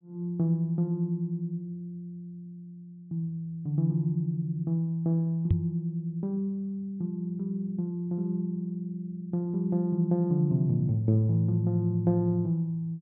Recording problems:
low-pass filter; nothing above 4 kHz
microphone bump; at 5.5 s; peak +8 dB vs average level

